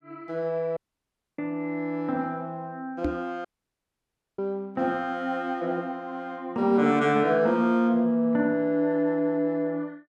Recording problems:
audio cutting out; at 1 s for 0.5 s and at 3.5 s for 1 s
knock on the microphone; at 3 s; peak +2 dB vs average level

